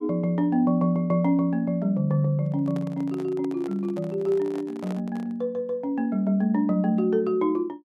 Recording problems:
handling noise; from 2.5 to 5.5 s; peak -10 dB vs average level

